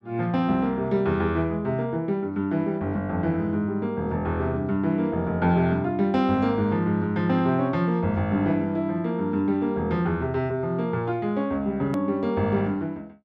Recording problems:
click at an edit; at 12 s

